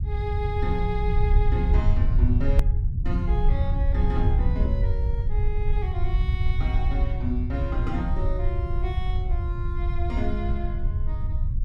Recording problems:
low-frequency rumble; below 78 Hz, SNR -7 dB
click at an edit; at 2.5 s

